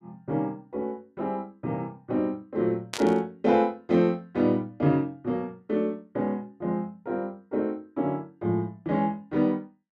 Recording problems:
static burst; at 3 s; peak -1 dB vs average level

